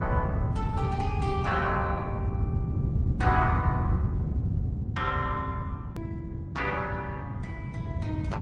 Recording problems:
lossy compression; Opus, then MP3, log-spectral distance 2 dB
rumble; below 150 Hz, SNR -2 dB
edit click; at 6 s

